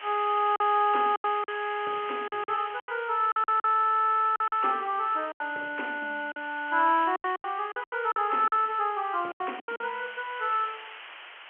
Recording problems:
phone line; 260 Hz to 3.2 kHz, G.711
background hiss; SNR 17 dB
lost packets; 11% of the sound replaced, filled with silence

